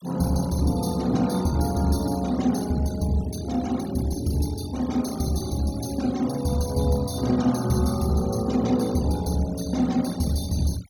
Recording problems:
denoising artefacts; signal-to-artefact ratio 18 dB

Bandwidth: 17 kHz